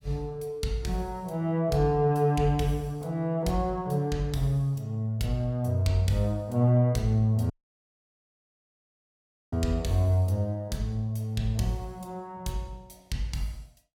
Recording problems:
audio cutting out; at 7.5 s for 2 s

